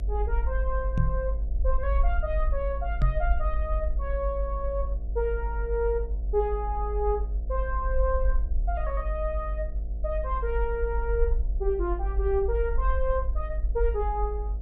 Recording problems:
hum; 60 Hz, harmonics up to 720 Hz, SNR 16 dB
rumble; below 52 Hz, strongest tone 50 Hz, SNR -1 dB
microphone thump; at 1 s and at 3 s; peak +8 dB vs average level

